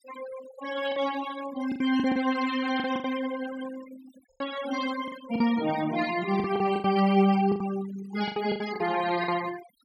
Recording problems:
noise reduction artefacts; signal-to-artefact ratio 14 dB
packet loss; 10% of the sound replaced, filled with the last packet

